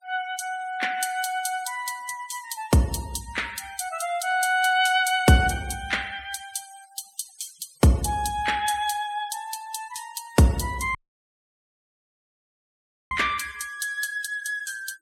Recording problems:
denoising artefacts; signal-to-artefact ratio 19 dB
dropout; at 11 s for 2 s

